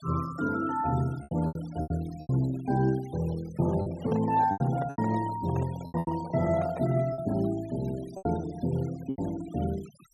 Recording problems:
noise reduction artefacts; signal-to-artefact ratio 19 dB
lost packets; 9% of the sound replaced, filled with repeated pitch periods
microphone handling noise; from 4 to 7 s; peak -5 dB vs average level

